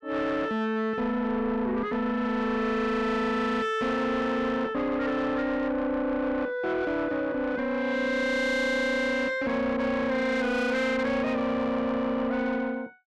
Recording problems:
distortion; soft clipping, signal-to-distortion ratio 10 dB

